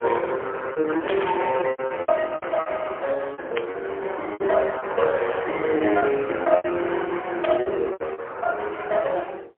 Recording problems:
phone line; 280 Hz to 3.4 kHz, AMR-NB, then MP3
lost packets; 12% of the sound replaced, filled with repeated pitch periods
burst of static; at 1 s, at 3.5 s and at 7.5 s; peak -2 dB vs average level

